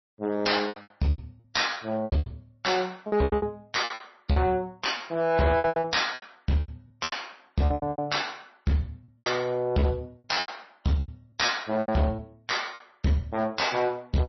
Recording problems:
lossy codec; MP3, log-spectral distance 5 dB, nothing above 5.7 kHz
distorted audio; hard clipping, uneven, signal-to-distortion ratio 10 dB
lost packets; 17% of the sound replaced, filled with repeated pitch periods

